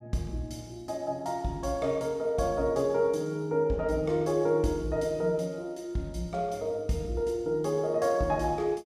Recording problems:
none

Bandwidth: 15 kHz